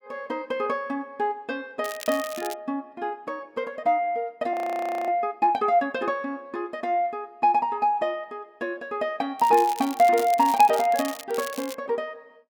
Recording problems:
crackling; at 2 s and from 9.5 to 12 s; loose cable, SNR 13 dB
audio freezing; at 4.5 s for 0.5 s

